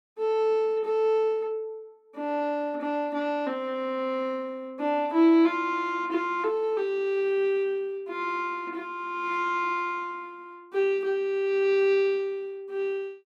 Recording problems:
none

